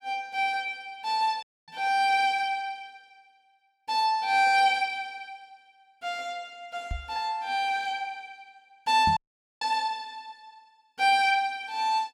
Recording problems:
audio cutting out; at 1.5 s and at 9 s
microphone bump; at 1.5 s, at 7 s and at 9 s; peak -3 dB vs average level

